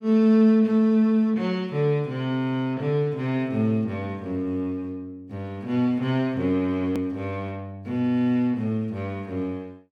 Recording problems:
edit click; at 7 s

